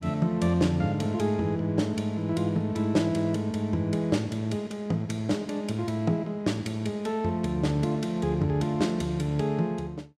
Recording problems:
none

